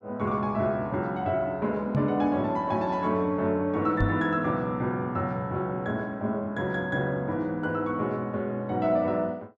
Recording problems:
knock on the microphone; at 2 s and at 4 s; peak +4 dB vs average level

